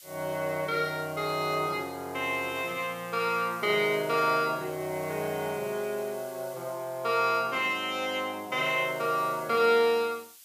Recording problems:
background hiss; SNR 20 dB

